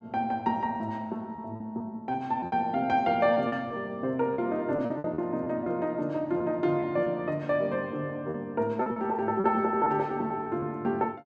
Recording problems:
packet loss; 7% of the sound replaced, filled with repeated pitch periods

